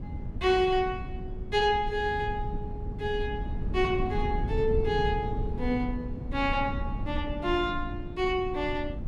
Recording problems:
low-frequency rumble; below 130 Hz, SNR 6 dB

